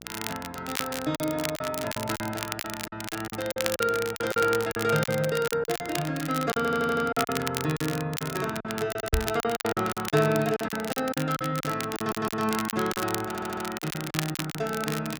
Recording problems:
electrical hum; 60 Hz, harmonics up to 900 Hz, SNR 23 dB
crackle; vinyl, SNR 7 dB
packet loss; 13% of the sound replaced, filled with silence
stutter; 4 times, first at 6.5 s
microphone thump; at 9 s; peak +6 dB vs average level

